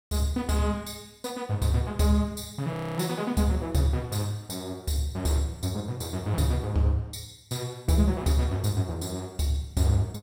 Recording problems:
frozen audio; at 2.5 s

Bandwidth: 16 kHz